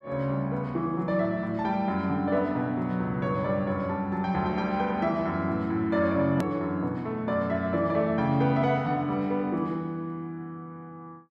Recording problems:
hard cut with a click; at 6.5 s

